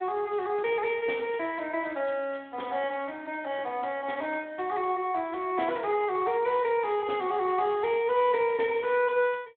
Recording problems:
telephone audio; 280 Hz to 3.6 kHz, Speex

